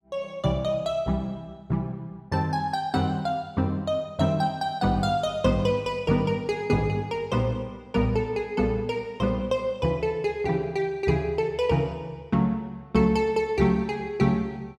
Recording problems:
none

